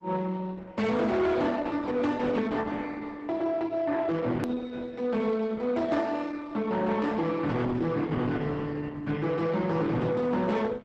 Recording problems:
lossy compression; Opus, log-spectral distance 3 dB, nothing above 13.1 kHz
distorted audio; soft clipping, signal-to-distortion ratio 11 dB
edit click; at 4.5 s

